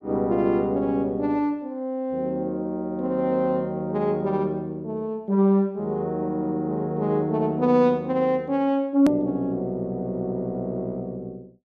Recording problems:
edit click; at 9 s

